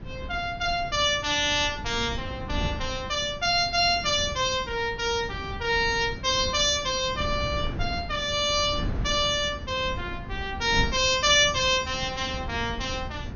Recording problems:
low-pass filter; nothing above 6.4 kHz
wind on the microphone; below 200 Hz, SNR 12 dB

